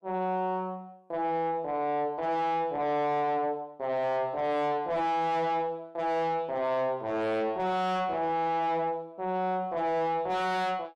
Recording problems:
distortion; soft clipping, signal-to-distortion ratio 6 dB

